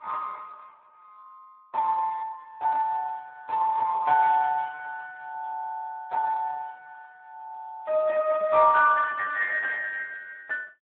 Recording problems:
telephone audio; 260 Hz to 3 kHz, Speex

